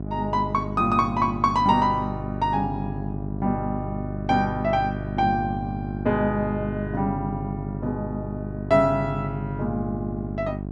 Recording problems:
hum; 50 Hz, harmonics up to 750 Hz, SNR 6 dB

